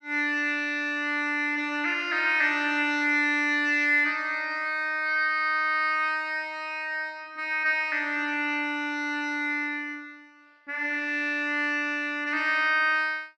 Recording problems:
none

